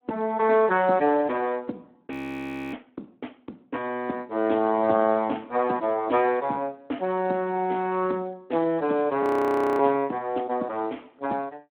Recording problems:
telephone audio; 190 Hz to 3.2 kHz, Speex
audio freezing; at 2 s for 0.5 s and at 9 s for 0.5 s

